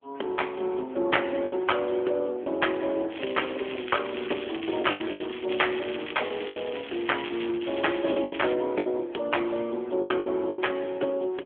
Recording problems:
phone line; 260 Hz to 3.4 kHz, AMR-NB
lost packets; 7% of the sound replaced, filled with the last packet
crackling; from 3 to 8.5 s; loose cable, SNR 11 dB

